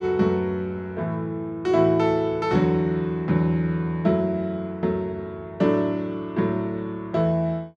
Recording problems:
none

